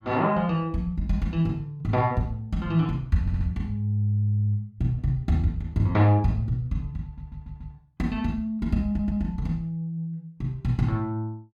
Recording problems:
audio stuttering; 4 times, first at 3 s

